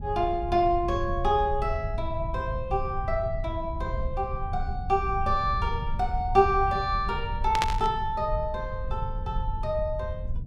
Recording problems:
low-frequency rumble; below 90 Hz, SNR 6 dB
burst of static; at 7.5 s; peak +4 dB vs average level

